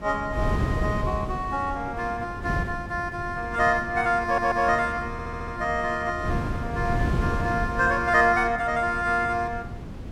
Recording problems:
wind on the microphone; below 240 Hz, SNR 7 dB
audio stuttering; at 4 s and at 5 s

